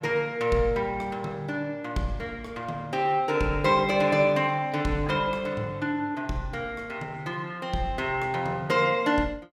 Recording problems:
none

